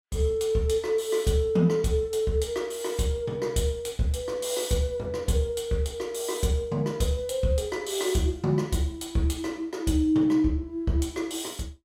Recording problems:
none

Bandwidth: 16 kHz